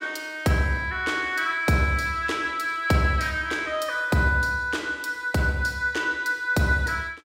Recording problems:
none

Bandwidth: 16 kHz